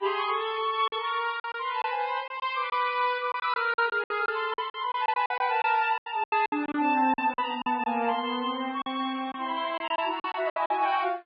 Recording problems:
lossy compression; Vorbis, then MP3, log-spectral distance 2 dB, nothing above 4.5 kHz
packet loss; 11% of the sound replaced, filled with silence

